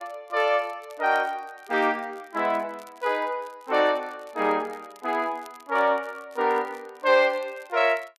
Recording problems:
crackle; vinyl, SNR 30 dB

